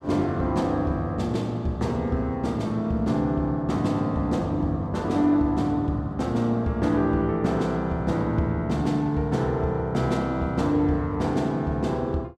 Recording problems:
none

